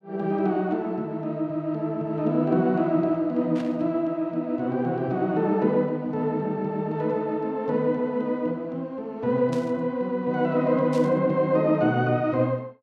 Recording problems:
burst of static; at 3.5 s, at 9.5 s and at 11 s; peak -13 dB vs average level

